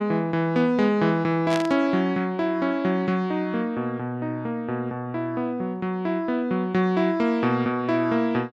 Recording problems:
static burst; at 1.5 s; peak -4 dB vs average level

